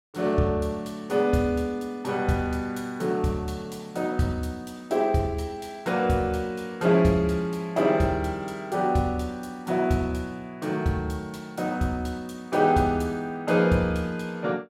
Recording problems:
none

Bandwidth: 16 kHz